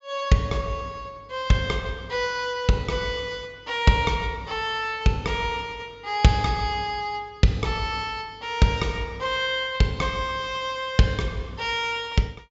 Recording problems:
low-pass filter; nothing above 7.4 kHz

